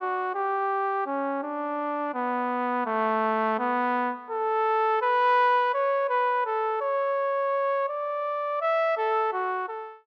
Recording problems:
none

